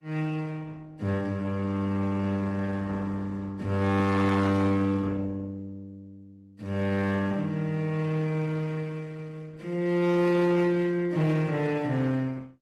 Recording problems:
codec artefacts; AAC, then Opus, log-spectral distance 2 dB, nothing above 15.5 kHz
distortion; hard clipping, signal-to-distortion ratio 11 dB

